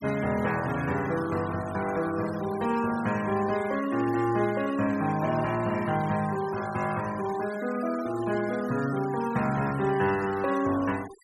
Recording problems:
denoising artefacts; signal-to-artefact ratio 16 dB

